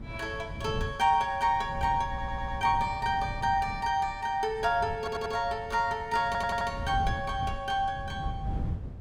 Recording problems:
wind on the microphone; below 150 Hz, SNR 10 dB
stutter; at 2 s, at 5 s and at 6.5 s

